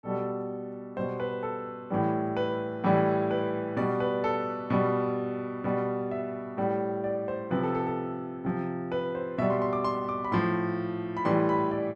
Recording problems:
none

